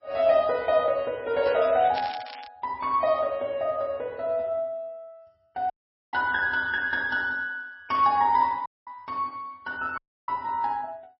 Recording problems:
lossy codec; MP3, log-spectral distance 2 dB, nothing above 5.3 kHz
crackling; from 1.5 to 2.5 s; loose cable, SNR 16 dB
dropout; at 5.5 s, at 8.5 s and at 10 s

